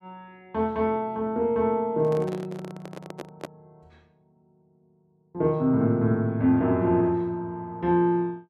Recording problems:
microphone handling noise; from 2 to 3.5 s; peak -7 dB vs average level

